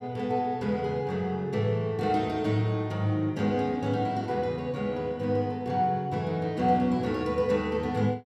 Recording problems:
none

